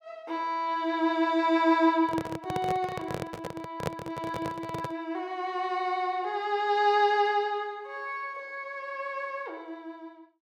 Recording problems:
handling noise; from 2 to 5 s; peak +2 dB vs average level

